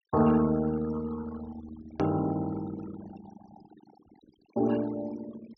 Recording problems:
low-pass filter; nothing above 6.1 kHz
noise reduction artefacts; signal-to-artefact ratio 17 dB
hard cut with a click; at 2 s

